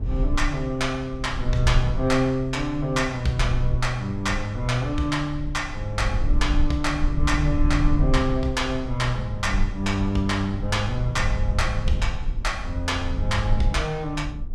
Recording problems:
rumble; below 62 Hz, SNR 4 dB

